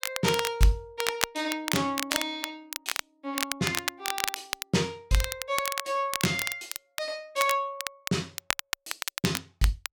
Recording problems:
crackle; vinyl, SNR 3 dB

